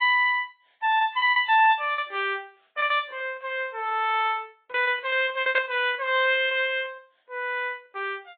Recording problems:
treble missing; nothing above 3.7 kHz
lossy compression; AAC, log-spectral distance 2 dB
lost packets; 11% of the sound replaced, filled with repeated pitch periods

